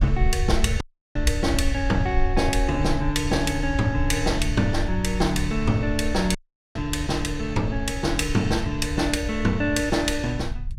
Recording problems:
low-frequency rumble; below 70 Hz, SNR 6 dB
dropout; at 1 s and at 6.5 s

